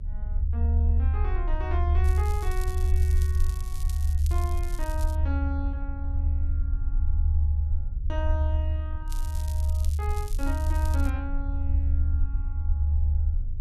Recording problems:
rumble; below 76 Hz, strongest tone 74 Hz, SNR -11 dB
crackling; from 2 to 5 s and from 9 to 11 s; loose cable, SNR 8 dB

